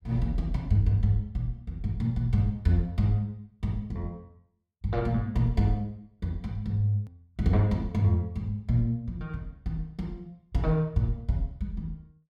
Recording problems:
hard cut with a click; at 7 s

